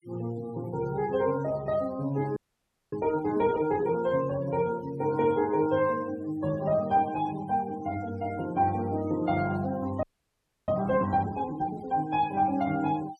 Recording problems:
denoising artefacts; signal-to-artefact ratio 21 dB
frozen audio; at 2.5 s for 0.5 s and at 10 s for 0.5 s

